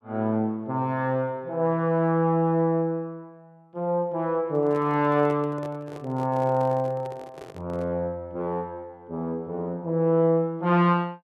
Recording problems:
microphone handling noise; from 4.5 to 8 s; peak -11 dB vs average level

